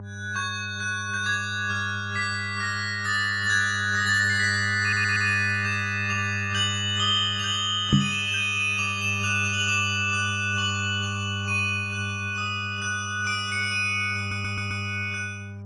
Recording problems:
lossy codec; AAC, log-spectral distance 2 dB, nothing above 10.4 kHz
electrical hum; 50 Hz, harmonics up to 800 Hz, SNR 10 dB
audio stuttering; at 5 s and at 14 s
knock on the microphone; at 8 s; peak +8 dB vs average level

